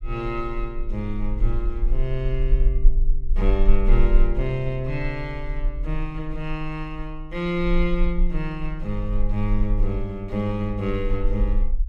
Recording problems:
low-frequency rumble; below 38 Hz, strongest tone 22 Hz, SNR -1 dB

